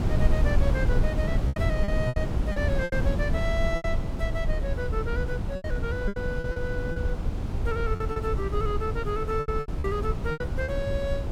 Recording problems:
wind noise; below 120 Hz, SNR -3 dB
lost packets; 10% of the sound replaced, filled with repeated pitch periods

